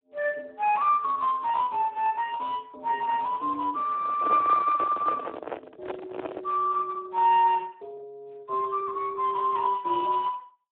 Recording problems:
telephone audio; 260 Hz to 2.8 kHz, Speex
microphone handling noise; from 4 to 6.5 s; peak -3 dB vs average level

